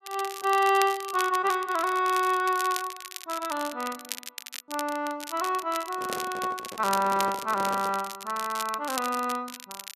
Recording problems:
crackling; vinyl, SNR 11 dB
handling noise; from 6 to 8 s; peak -6 dB vs average level

